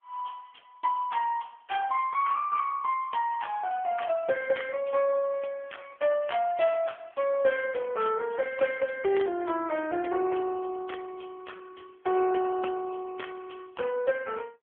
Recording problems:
telephone audio; 190 Hz to 3.2 kHz, AMR-NB

